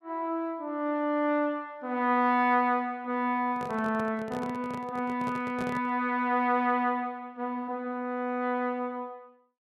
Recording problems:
microphone handling noise; from 3.5 to 6 s; peak -4 dB vs average level

